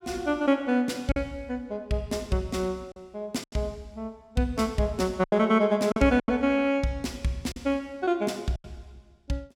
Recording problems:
packet loss; 5% of the sound replaced, filled with silence

